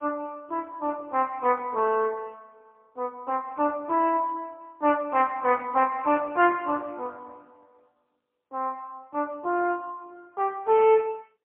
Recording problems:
telephone audio; 260 Hz to 3.1 kHz, AMR-NB, then MP3

